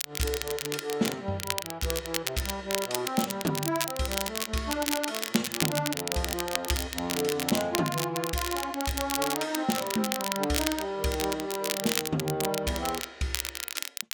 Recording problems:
crackle; vinyl, SNR 2 dB

